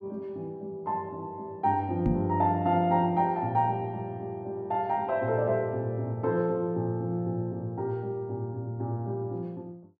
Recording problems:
knock on the microphone; at 2 s; peak +6 dB vs average level

